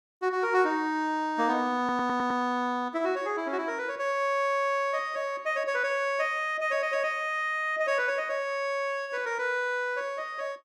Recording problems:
stutter; at 2 s

